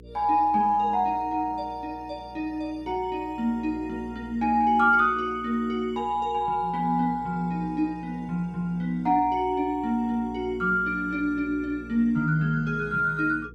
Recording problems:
mains hum; 60 Hz, harmonics up to 480 Hz, SNR 22 dB

